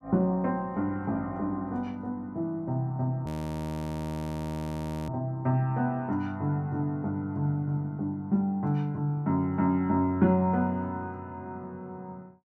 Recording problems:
frozen audio; at 3.5 s for 2 s

